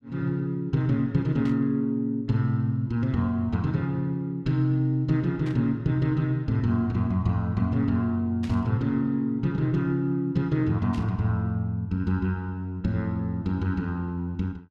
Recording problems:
static burst; 4 times, first at 1.5 s; peak -13 dB vs average level

